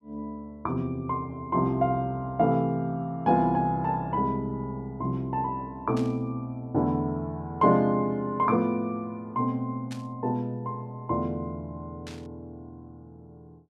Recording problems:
burst of static; at 6 s, at 10 s and at 12 s; peak -11 dB vs average level

